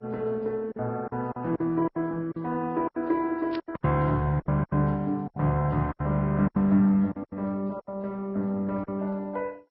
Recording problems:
lossy compression; Vorbis, then MP2, log-spectral distance 2 dB
lost packets; 12% of the sound replaced, filled with silence
burst of static; at 3.5 s; peak -9 dB vs average level

